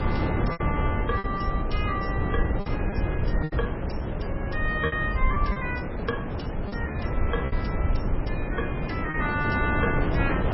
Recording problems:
codec artefacts; MP3, log-spectral distance 3 dB, nothing above 5.5 kHz
hum; 60 Hz, harmonics up to 600 Hz, SNR 9 dB
rumble; below 70 Hz, SNR 3 dB
wind on the microphone; below 440 Hz, SNR -1 dB
lost packets; 6% of the sound replaced, filled with repeated pitch periods

